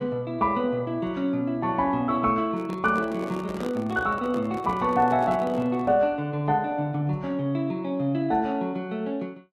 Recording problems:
microphone handling noise; from 2.5 to 6 s; peak -4 dB vs average level

